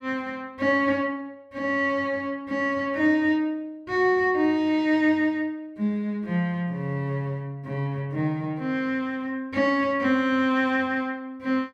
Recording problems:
none

